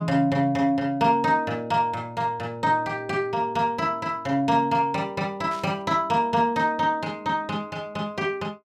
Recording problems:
static burst; at 5.5 s; peak -14 dB vs average level

